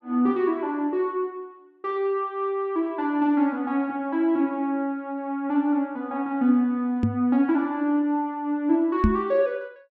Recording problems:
knock on the microphone; at 7 s and at 9 s; peak +7 dB vs average level

